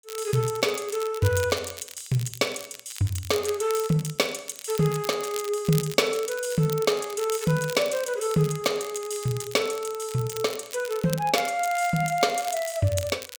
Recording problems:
crackle; vinyl, SNR 13 dB

